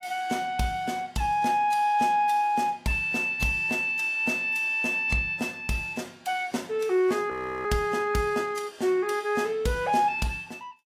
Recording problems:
lossy codec; AAC, log-spectral distance 2 dB, nothing above 15.1 kHz
audio freezing; at 7.5 s

